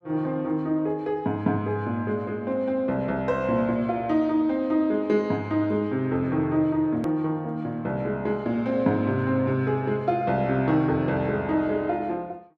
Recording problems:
click at an edit; at 7 s

